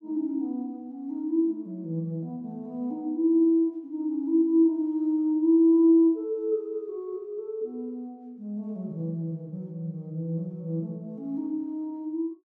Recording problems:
none

